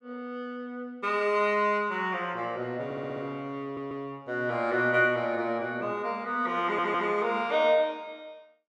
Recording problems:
audio stuttering; at 3 s, at 3.5 s and at 6.5 s

